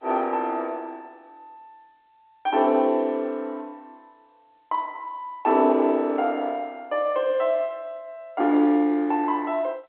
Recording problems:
telephone audio; 240 Hz to 3.6 kHz, G.711

